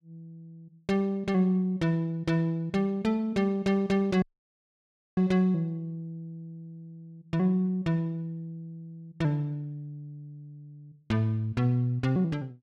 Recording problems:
dropout; at 4 s for 1 s

